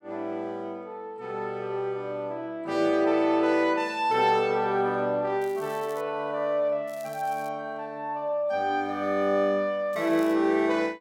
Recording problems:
crackling; at 5.5 s, at 7 s and at 10 s; loose cable, SNR 24 dB

